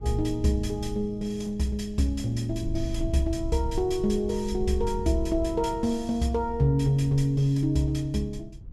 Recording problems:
low-frequency rumble; below 72 Hz, SNR 12 dB

